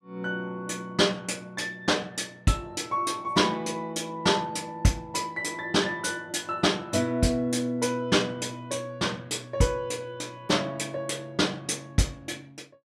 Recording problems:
none

